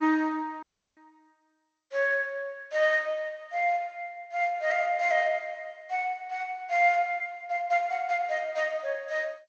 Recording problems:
lossy codec; MP2, then G.722, log-spectral distance 2 dB
audio cutting out; at 0.5 s

